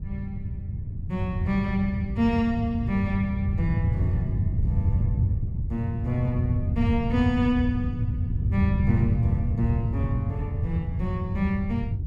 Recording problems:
wind noise; below 120 Hz, SNR -1 dB

